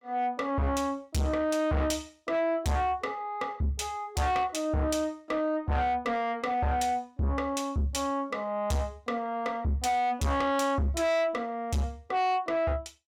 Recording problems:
distorted audio; soft clipping, signal-to-distortion ratio 6 dB

